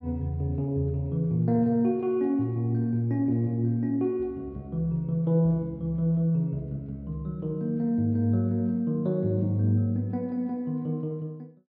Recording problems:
none

